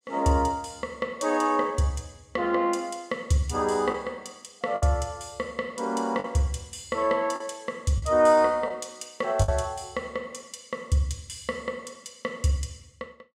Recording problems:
lost packets; 2% of the sound replaced, filled with the last packet

